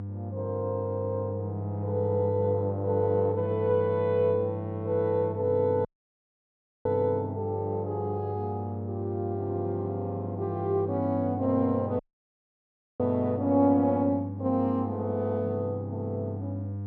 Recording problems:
hum; 50 Hz, harmonics up to 500 Hz, SNR 7 dB
audio cutting out; at 6 s for 1 s and at 12 s for 1 s

